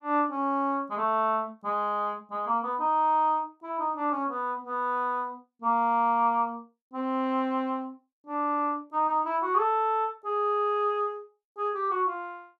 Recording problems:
none

